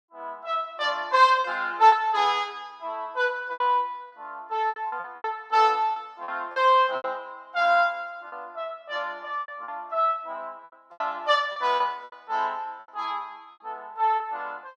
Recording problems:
lost packets; 8% of the sound replaced, filled with repeated pitch periods

